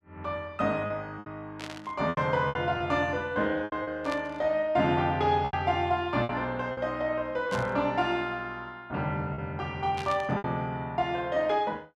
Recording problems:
lost packets; 6% of the sound replaced, filled with repeated pitch periods
static burst; 4 times, first at 1.5 s; peak -7 dB vs average level

